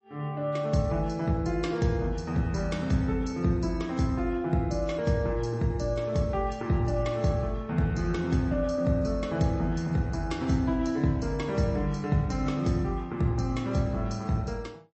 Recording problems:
lossy codec; MP3, log-spectral distance 2 dB, nothing above 7.8 kHz

